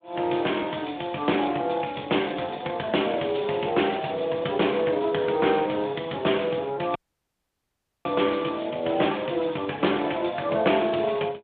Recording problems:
phone line; 240 Hz to 3.5 kHz, Speex
audio cutting out; at 7 s for 1 s

